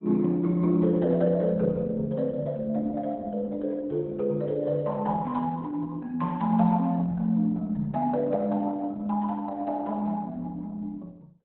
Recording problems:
lossy codec; Opus, log-spectral distance 2 dB, nothing above 4 kHz

